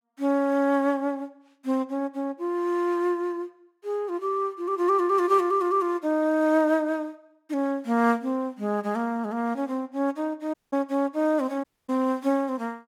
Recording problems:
dropout; at 11 s and at 12 s

